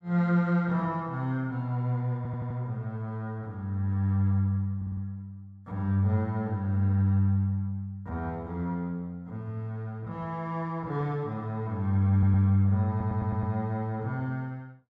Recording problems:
audio stuttering; 4 times, first at 2 s

